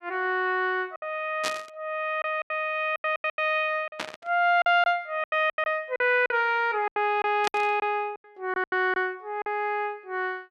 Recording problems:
lost packets; 11% of the sound replaced, filled with silence
burst of static; at 1.5 s, at 4 s and at 7.5 s; peak 0 dB vs average level

